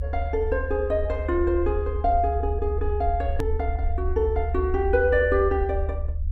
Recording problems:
low-frequency rumble; below 74 Hz, strongest tone 74 Hz, SNR 4 dB
hard cut with a click; at 3.5 s

